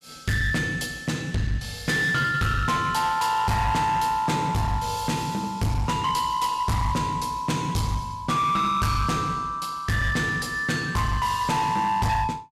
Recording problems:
distortion; hard clipping, uneven, signal-to-distortion ratio 7 dB

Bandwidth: 14.5 kHz